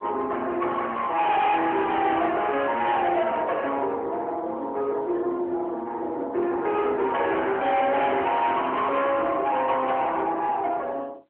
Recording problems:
phone line; 280 Hz to 3.4 kHz, AMR-NB
distorted audio; soft clipping, signal-to-distortion ratio 9 dB

